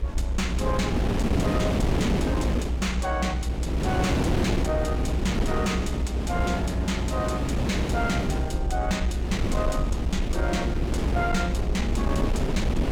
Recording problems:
distortion; soft clipping, signal-to-distortion ratio 10 dB
rumble; below 66 Hz, strongest tone 60 Hz, SNR 1 dB
wind noise; below 440 Hz, SNR -1 dB

